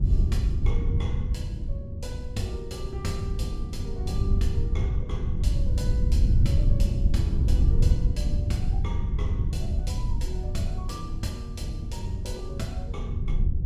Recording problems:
wind on the microphone; below 94 Hz, SNR -9 dB

